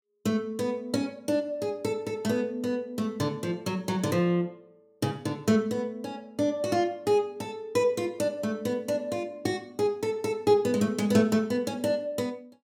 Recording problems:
none

